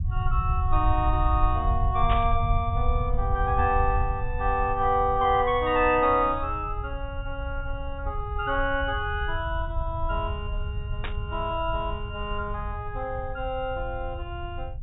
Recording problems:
treble cut off; nothing above 4 kHz
rumble; below 84 Hz, SNR 4 dB
burst of static; at 2 s and at 11 s; peak -2 dB vs average level

